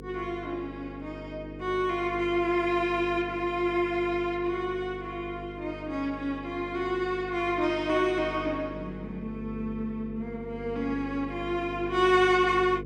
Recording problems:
hum; 50 Hz, harmonics up to 500 Hz, SNR 13 dB

